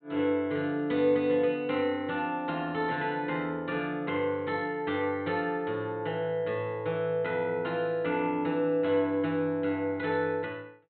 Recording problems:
treble missing; nothing above 4 kHz

